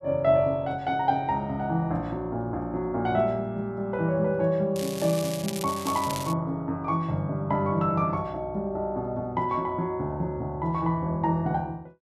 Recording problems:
crackling; from 5 to 6.5 s; loose cable, SNR 10 dB

